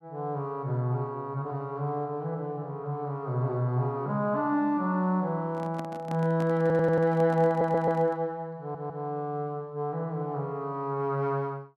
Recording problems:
handling noise; from 5.5 to 8 s; peak -7 dB vs average level
audio stuttering; at 6.5 s, at 7.5 s and at 8.5 s

